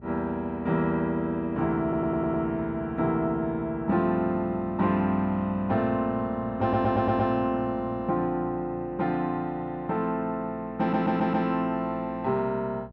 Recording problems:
electrical hum; 60 Hz, harmonics up to 780 Hz, SNR 20 dB
stutter; at 2 s, at 6.5 s and at 11 s

